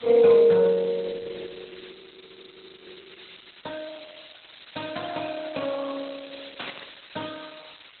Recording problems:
lossy compression; MP2, then Opus, log-spectral distance 25 dB, nothing above 4 kHz
background hiss; SNR 22 dB
audio freezing; at 2 s for 1 s
static burst; at 6.5 s; peak -7 dB vs average level

